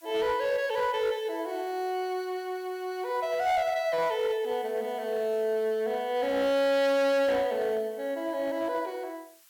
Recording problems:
distorted audio; hard clipping, signal-to-distortion ratio 8 dB
background hiss; slope +4 dB per octave, SNR 27 dB

